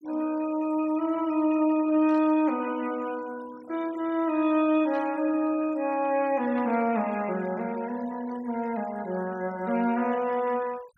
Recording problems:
noise reduction artefacts; signal-to-artefact ratio 22 dB
static burst; at 2 s, at 5 s and at 6.5 s; peak -17 dB vs average level

